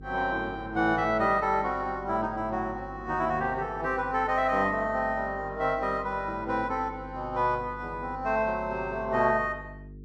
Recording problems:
hum; 50 Hz, harmonics up to 450 Hz, SNR 17 dB

